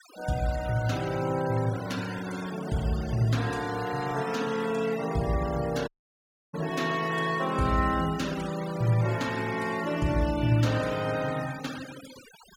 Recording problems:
noise reduction artefacts; signal-to-artefact ratio 14 dB
dropout; at 6 s for 0.5 s

